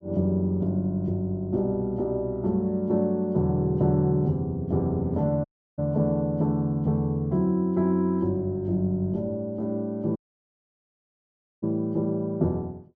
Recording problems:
dropout; at 5.5 s and at 10 s for 1.5 s

